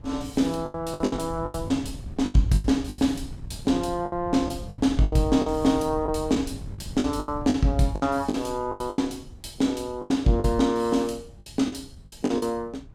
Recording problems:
wind on the microphone; below 140 Hz, SNR 15 dB
lost packets; 14% of the sound replaced, filled with the last packet

